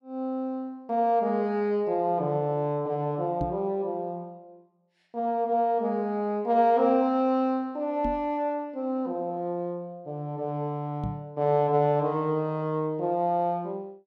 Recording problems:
microphone bump; at 3.5 s, at 8 s and at 11 s; peak -1 dB vs average level

